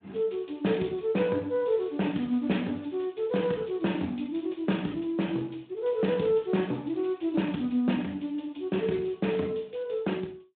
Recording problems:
phone line; 130 Hz to 3.7 kHz, Speex

